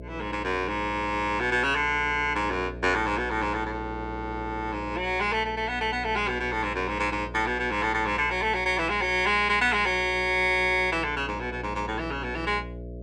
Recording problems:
electrical hum; 60 Hz, harmonics up to 660 Hz, SNR 14 dB

